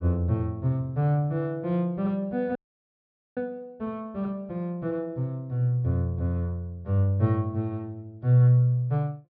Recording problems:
treble cut off; nothing above 5.5 kHz
dropout; at 2.5 s for 1 s

